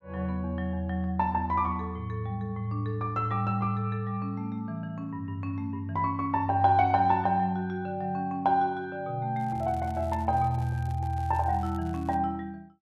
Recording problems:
crackling; from 9.5 to 12 s; loose cable, SNR 27 dB

